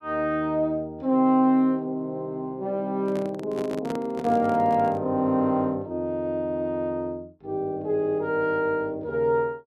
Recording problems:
handling noise; from 3 to 5 s; peak -4 dB vs average level

